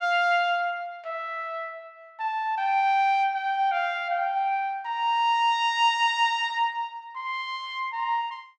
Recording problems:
none

